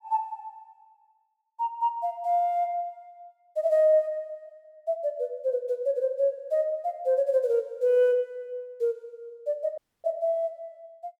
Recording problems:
audio cutting out; at 10 s

